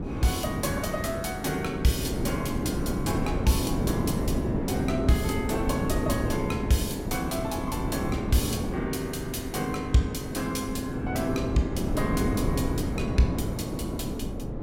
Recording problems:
wind noise; below 350 Hz, SNR 1 dB

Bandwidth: 16.5 kHz